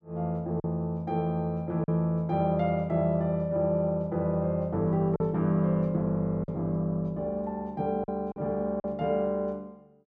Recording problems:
packet loss; 3% of the sound replaced, filled with silence

